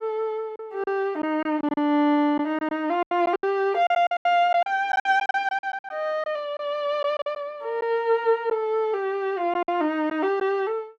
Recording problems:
packet loss; 10% of the sound replaced, filled with silence

